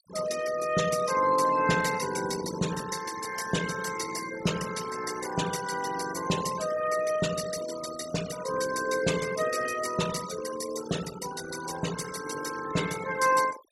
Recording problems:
noise reduction artefacts; signal-to-artefact ratio 10 dB

